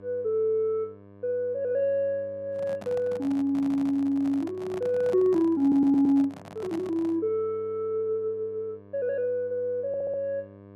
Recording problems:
hum; 50 Hz, harmonics up to 1.7 kHz, SNR 21 dB
microphone handling noise; from 2.5 to 7 s; peak -9 dB vs average level
stutter; at 3.5 s, at 5.5 s and at 10 s

